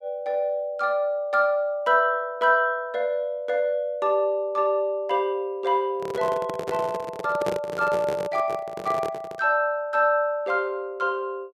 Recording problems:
handling noise; from 6 to 9.5 s; peak 0 dB vs average level

